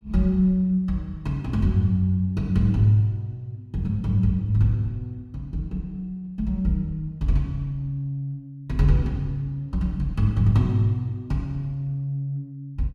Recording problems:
none

